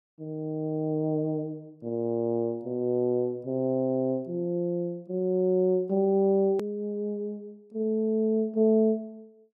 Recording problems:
click at an edit; at 6.5 s

